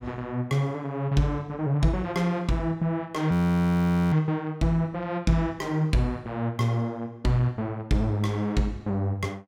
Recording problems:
frozen audio; at 3.5 s for 1 s

